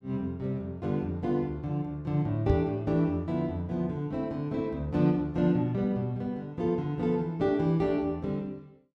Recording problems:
microphone thump; at 2.5 s; peak +6 dB vs average level

